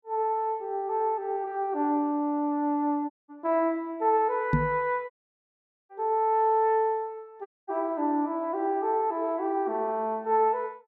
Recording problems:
dropout; at 3 s, at 5 s for 1 s and at 7.5 s
knock on the microphone; at 4.5 s; peak +6 dB vs average level

